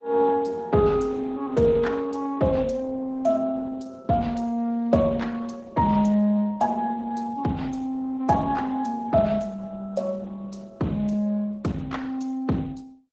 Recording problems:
codec artefacts; Speex, then Opus, log-spectral distance 3 dB

